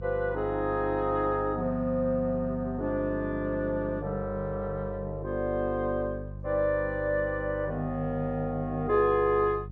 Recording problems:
hum; 50 Hz, harmonics up to 400 Hz, SNR 11 dB

